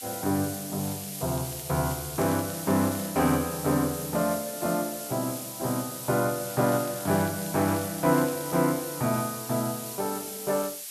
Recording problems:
background hiss; slope +4 dB per octave, SNR 8 dB
crackling; from 1 to 3.5 s and from 6.5 to 8.5 s; loose cable, SNR 20 dB

